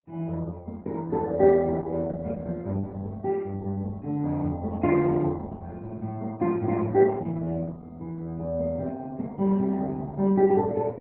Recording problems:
lossy codec; MP3, then Opus, log-spectral distance 2 dB

